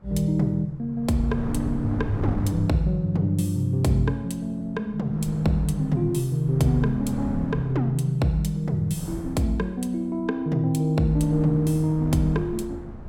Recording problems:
wind on the microphone; below 250 Hz, SNR 11 dB

